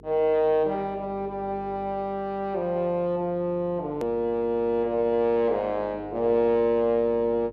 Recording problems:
hum; 50 Hz, harmonics up to 450 Hz, SNR 22 dB
click at an edit; at 4 s

